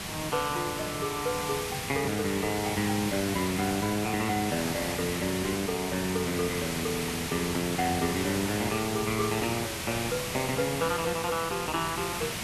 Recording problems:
hiss; slope -1 dB per octave, SNR 3 dB

